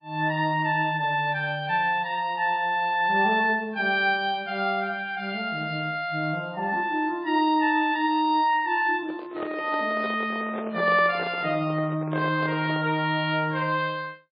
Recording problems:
lossy codec; MP3, log-spectral distance 2 dB, nothing above 4.2 kHz
handling noise; from 9 to 13 s; peak -5 dB vs average level

